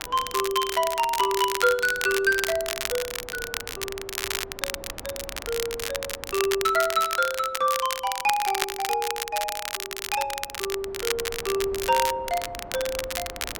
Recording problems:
wind on the microphone; below 710 Hz, SNR 20 dB
crackle; vinyl, SNR 5 dB

